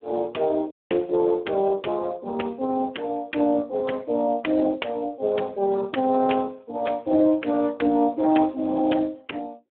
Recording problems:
telephone audio; 220 Hz to 3.3 kHz, Speex
dropout; at 0.5 s

